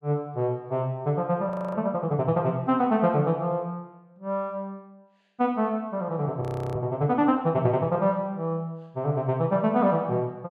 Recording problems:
audio freezing; at 1.5 s and at 6.5 s

